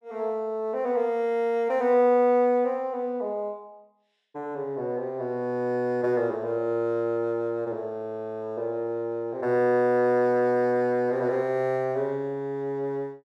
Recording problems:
none

